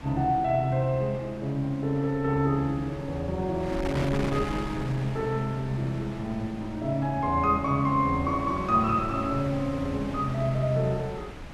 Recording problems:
wind noise; below 1.1 kHz, SNR 12 dB

